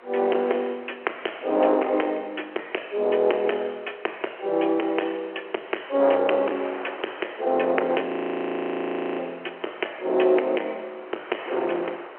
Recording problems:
phone line; 280 Hz to 3.1 kHz, G.711
distortion; soft clipping, signal-to-distortion ratio 9 dB
wind noise; below 1.6 kHz, SNR 16 dB
audio freezing; at 8 s for 1 s

